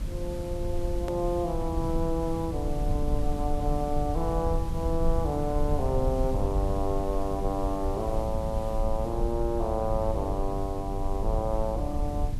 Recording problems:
electrical hum; 50 Hz, harmonics up to 750 Hz, SNR 18 dB
hiss; slope -4 dB per octave, SNR 16 dB
rumble; below 76 Hz, SNR 2 dB
hard cut with a click; at 1 s

